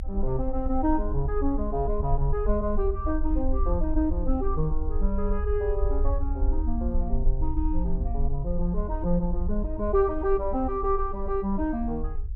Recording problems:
low-frequency rumble; below 52 Hz, strongest tone 22 Hz, SNR 2 dB

